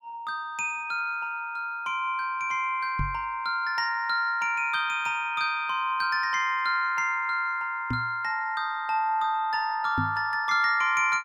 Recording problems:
microphone thump; at 3 s, at 8 s and at 10 s; peak 0 dB vs average level

